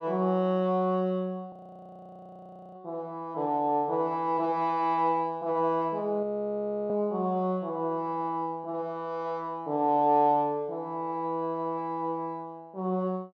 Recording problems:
audio freezing; at 1.5 s for 1 s and at 6 s for 0.5 s

